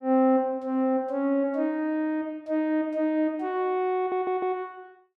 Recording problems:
stutter; at 4 s

